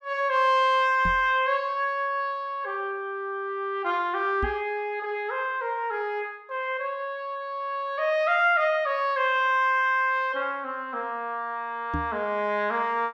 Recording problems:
microphone bump; at 1 s, at 4.5 s and at 12 s; peak -2 dB vs average level

